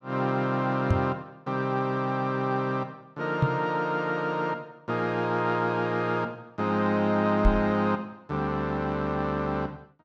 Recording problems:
microphone bump; at 1 s, at 3.5 s and at 7.5 s; peak +8 dB vs average level

